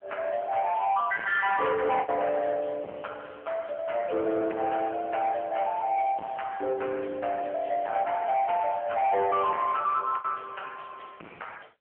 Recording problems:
phone line; 260 Hz to 3.2 kHz, AMR-NB
distorted audio; soft clipping, signal-to-distortion ratio 10 dB
packet loss; 1.4% of the sound replaced, filled with the last packet

